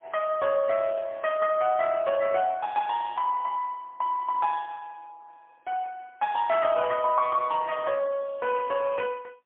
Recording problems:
phone line; 370 Hz to 2.8 kHz, AMR-NB, then MP3

